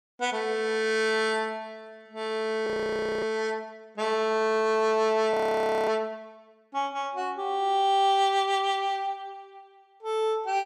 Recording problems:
audio freezing; at 2.5 s for 0.5 s and at 5.5 s for 0.5 s

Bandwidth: 14.5 kHz